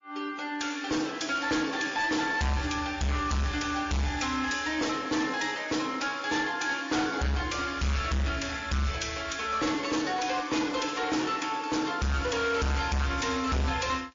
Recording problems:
lossy compression; MP3, then MP3, log-spectral distance 5 dB, nothing above 6.2 kHz
distorted audio; hard clipping, signal-to-distortion ratio 6 dB

